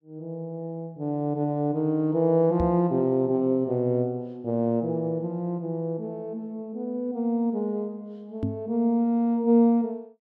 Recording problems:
microphone thump; at 2.5 s and at 8.5 s; peak +1 dB vs average level

